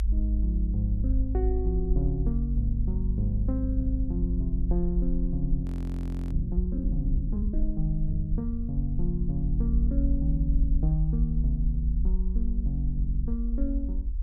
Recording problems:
low-frequency rumble; below 54 Hz, SNR -2 dB
audio freezing; at 5.5 s for 0.5 s

